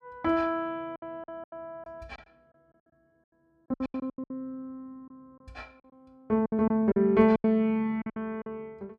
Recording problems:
lost packets; 14% of the sound replaced, filled with silence

